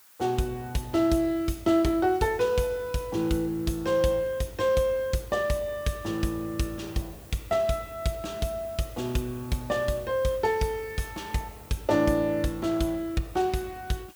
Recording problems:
hiss; SNR 22 dB

